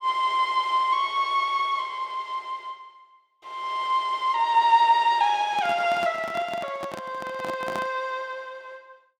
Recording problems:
handling noise; from 5.5 to 8 s; peak -5 dB vs average level

